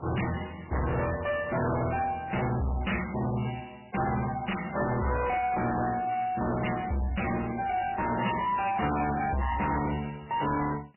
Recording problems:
lossy codec; AAC, then MP3, log-spectral distance 7 dB, nothing above 2.9 kHz
distorted audio; hard clipping, uneven, signal-to-distortion ratio 6 dB

